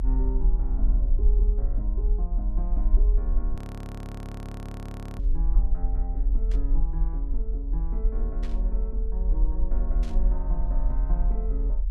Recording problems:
low-frequency rumble; below 42 Hz, strongest tone 40 Hz, SNR -12 dB
audio freezing; at 3.5 s for 1.5 s
burst of static; 4 times, first at 5 s; peak -3 dB vs average level

